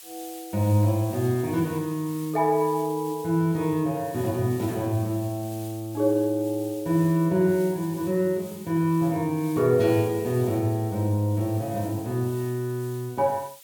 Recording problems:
hiss; slope +3 dB per octave, SNR 19 dB

